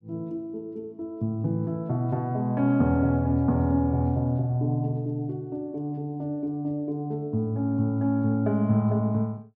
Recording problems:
none

